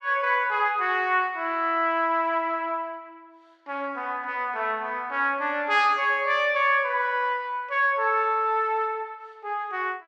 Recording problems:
none

